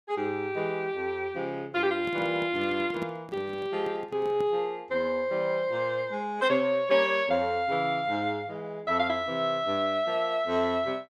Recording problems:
microphone handling noise; from 2 to 4.5 s; peak -6 dB vs average level

